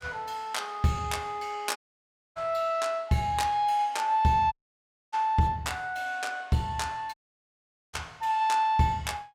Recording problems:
dropout; at 2 s for 0.5 s, at 4.5 s for 0.5 s and at 7 s for 1 s

